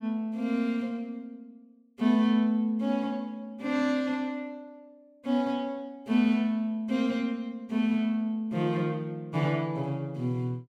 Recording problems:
none

